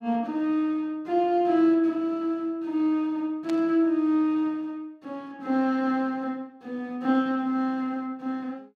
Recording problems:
burst of static; at 3.5 s; peak -11 dB vs average level

